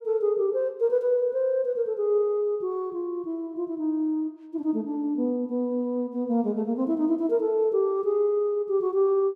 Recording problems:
none

